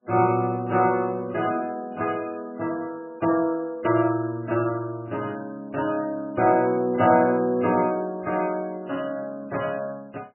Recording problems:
lossy compression; MP3, log-spectral distance 2 dB, nothing above 2.7 kHz

